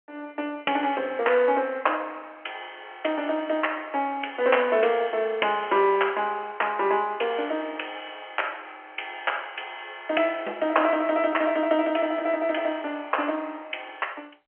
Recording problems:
telephone audio; 340 Hz to 3.1 kHz, G.711

